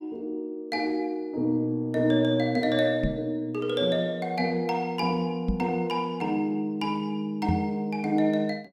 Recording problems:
microphone bump; at 3 s, at 5.5 s and at 7.5 s; peak +3 dB vs average level

